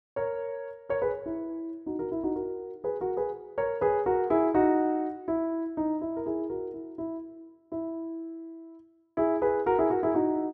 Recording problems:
none

